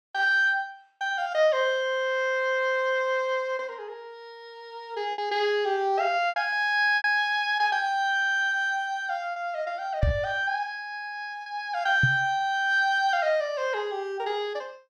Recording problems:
lost packets; 3% of the sound replaced, filled with repeated pitch periods
knock on the microphone; at 10 s and at 12 s; peak +5 dB vs average level

